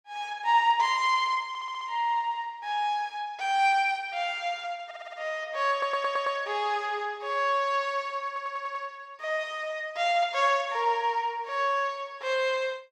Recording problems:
audio stuttering; 4 times, first at 1.5 s

